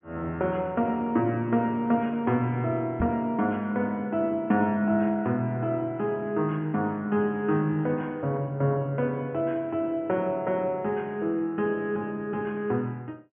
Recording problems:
treble missing; nothing above 3.3 kHz
microphone bump; at 3 s; peak +1 dB vs average level

